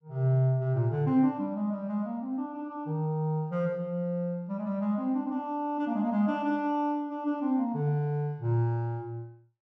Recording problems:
none

